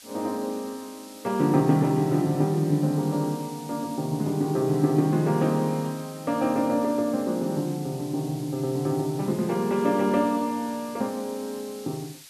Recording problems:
hiss; slope +3 dB per octave, SNR 19 dB

